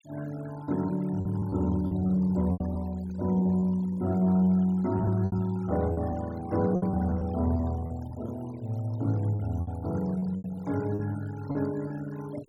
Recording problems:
denoising artefacts; signal-to-artefact ratio 21 dB
packet loss; 8% of the sound replaced, filled with repeated pitch periods

